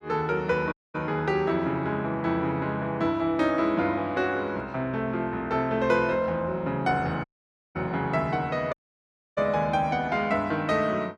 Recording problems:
audio cutting out; at 0.5 s, at 7 s for 0.5 s and at 8.5 s for 0.5 s

